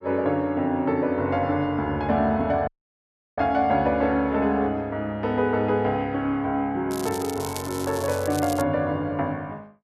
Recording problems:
dropout; at 2.5 s for 0.5 s
crackling; from 7 to 8.5 s; loose cable, SNR 13 dB

